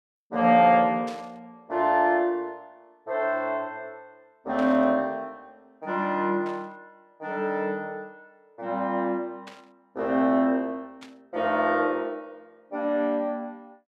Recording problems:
burst of static; 5 times, first at 1 s; peak -14 dB vs average level

